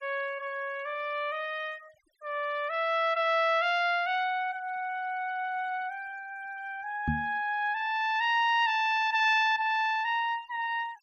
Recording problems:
denoising artefacts; signal-to-artefact ratio 28 dB
microphone bump; at 7 s; peak +2 dB vs average level

